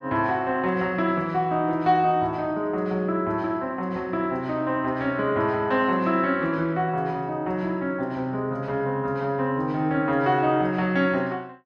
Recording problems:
none

